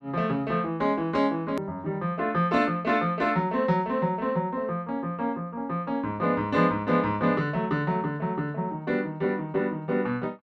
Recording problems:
hard cut with a click; at 1.5 s

